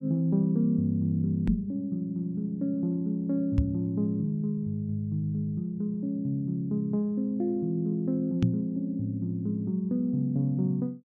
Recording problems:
knock on the microphone; at 1.5 s, at 3.5 s and at 8.5 s; peak +8 dB vs average level

